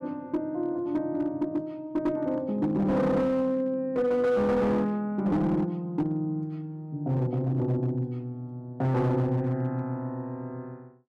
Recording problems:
distortion; hard clipping, signal-to-distortion ratio 11 dB

